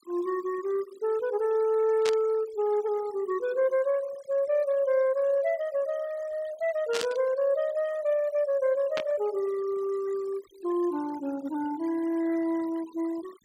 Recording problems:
noise reduction artefacts; signal-to-artefact ratio 22 dB
burst of static; at 2 s, at 7 s and at 9 s; peak 0 dB vs average level

